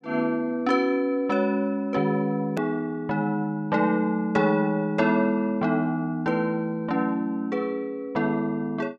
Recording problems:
click at an edit; at 2.5 s

